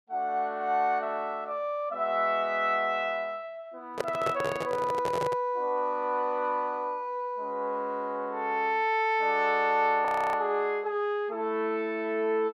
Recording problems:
microphone handling noise; from 4 to 5.5 s; peak +2 dB vs average level
frozen audio; at 10 s

